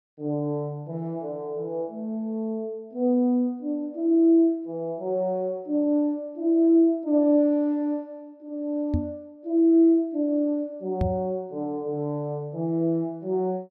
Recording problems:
microphone bump; at 9 s and at 11 s; peak +3 dB vs average level

